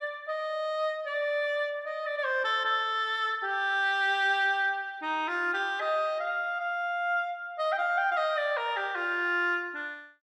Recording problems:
none

